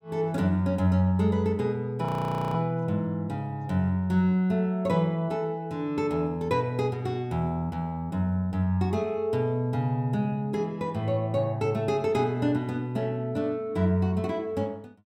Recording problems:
audio freezing; at 2 s

